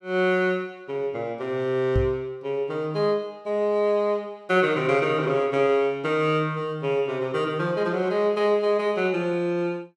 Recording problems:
microphone thump; at 2 s; peak +2 dB vs average level

